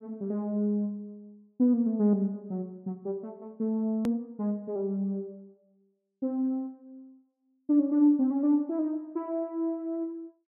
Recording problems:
low-pass filter; nothing above 3.2 kHz
edit click; at 4 s

